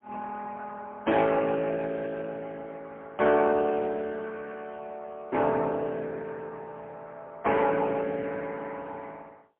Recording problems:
telephone audio; 190 Hz to 3.4 kHz, AMR-NB, then MP3

